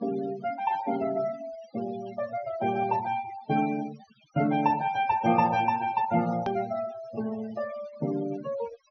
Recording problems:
treble missing; nothing above 6.2 kHz
denoising artefacts; signal-to-artefact ratio 14 dB
edit click; at 6.5 s

